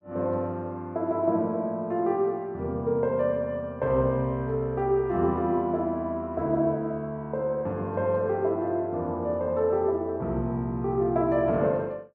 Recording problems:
none

